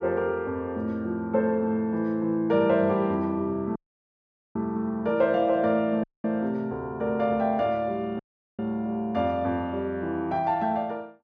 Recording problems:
audio cutting out; at 4 s for 1 s, at 6 s and at 8 s

